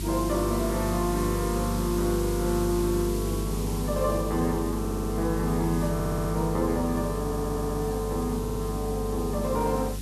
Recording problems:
electrical hum; 50 Hz, harmonics up to 400 Hz, SNR 5 dB
background hiss; slope +3 dB per octave, SNR 12 dB
stutter; 4 times, first at 5 s

